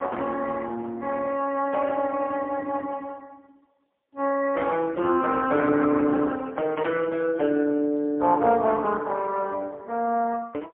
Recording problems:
telephone audio; 300 Hz to 3.3 kHz, AMR-NB, then MP3

